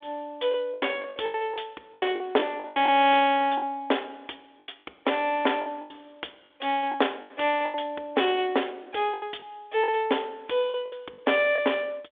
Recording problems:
phone line; 300 Hz to 3.6 kHz, G.726
packet loss; 11% of the sound replaced, filled with the last packet

